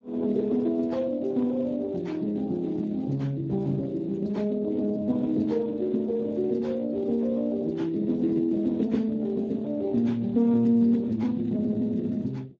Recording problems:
lossy codec; Speex, log-spectral distance 2 dB

